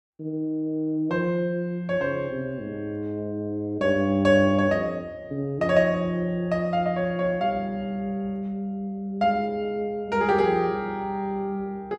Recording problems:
none

